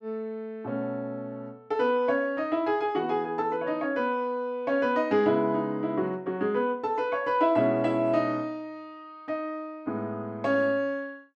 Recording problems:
none

